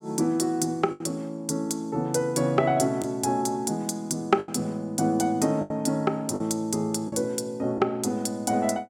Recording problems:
lost packets; 4% of the sound replaced, filled with the last packet

